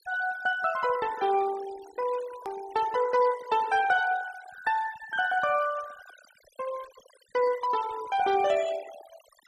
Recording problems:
noise reduction artefacts; signal-to-artefact ratio 17 dB
click at an edit; at 2.5 s

